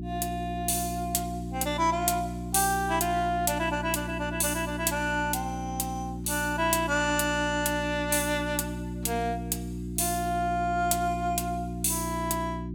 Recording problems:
hum; 60 Hz, harmonics up to 360 Hz, SNR 7 dB

